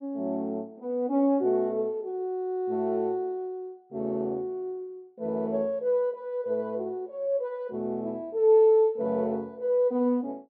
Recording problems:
none

